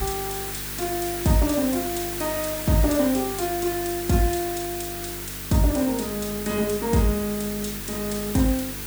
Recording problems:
hum; 50 Hz, harmonics up to 450 Hz, SNR 14 dB
background hiss; SNR 6 dB

